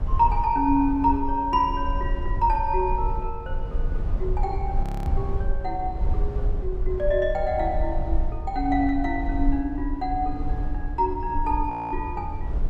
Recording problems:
low-frequency rumble; below 58 Hz, SNR 5 dB
frozen audio; at 5 s and at 12 s

